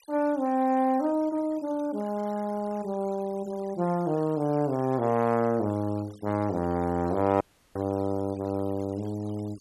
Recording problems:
denoising artefacts; signal-to-artefact ratio 24 dB
dropout; at 7.5 s

